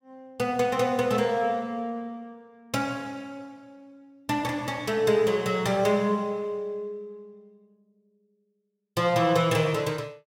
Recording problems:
none

